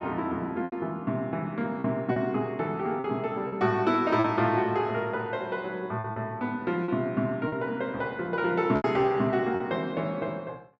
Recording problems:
lost packets; 5% of the sound replaced, filled with repeated pitch periods

